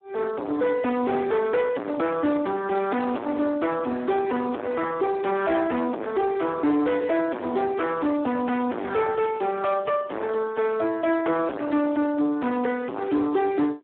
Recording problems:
telephone audio; 260 Hz to 3.3 kHz, Speex
distortion; hard clipping, signal-to-distortion ratio 4 dB

